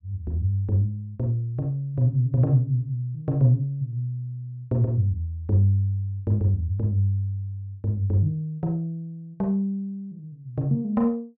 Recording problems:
none

